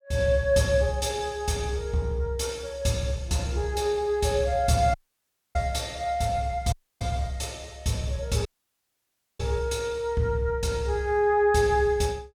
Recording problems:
dropout; at 5 s for 0.5 s, at 6.5 s and at 8.5 s for 1 s

